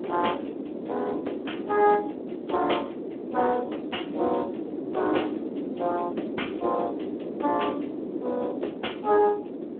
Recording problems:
phone line; 260 Hz to 3.4 kHz, Speex
wind noise; below 440 Hz, SNR 6 dB

